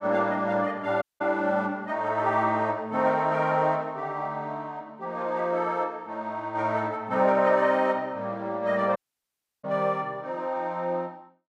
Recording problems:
dropout; at 1 s and at 9 s for 0.5 s

